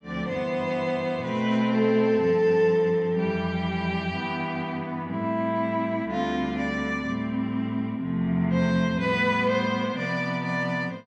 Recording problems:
none

